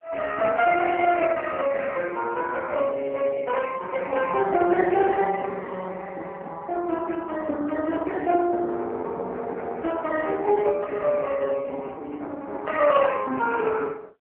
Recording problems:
telephone audio; 220 Hz to 2.8 kHz, AMR-NB
lost packets; 6% of the sound replaced, filled with repeated pitch periods

